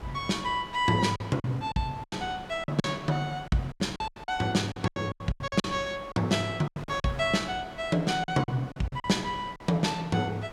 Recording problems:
wind noise; below 1.4 kHz, SNR 17 dB
packet loss; 13% of the sound replaced, filled with silence

